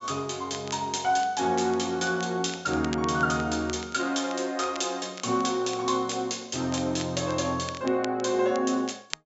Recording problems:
treble missing; nothing above 8 kHz
crackle; vinyl, SNR 18 dB

